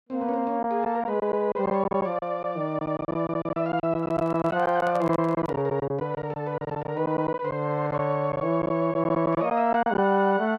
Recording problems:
packet loss; 11% of the sound replaced, filled with silence
microphone handling noise; from 4 to 5.5 s; peak -7 dB vs average level

